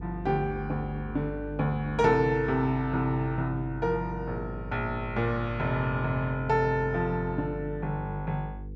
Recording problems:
hum; 50 Hz, harmonics up to 500 Hz, SNR 11 dB

